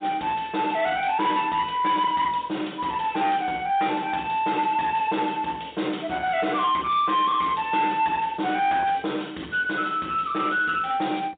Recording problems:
telephone audio; 220 Hz to 3.7 kHz, G.711
distortion; soft clipping, signal-to-distortion ratio 11 dB

